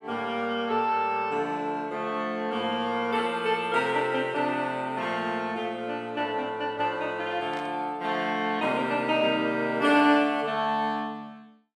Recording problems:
static burst; at 7.5 s; peak -13 dB vs average level

